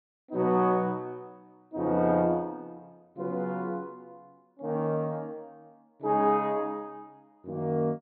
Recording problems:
low-pass filter; nothing above 4.3 kHz

